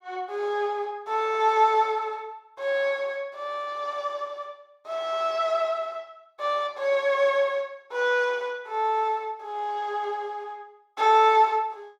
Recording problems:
none

